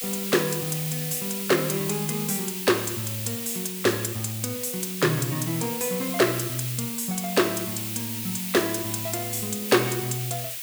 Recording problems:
hiss; SNR 4 dB

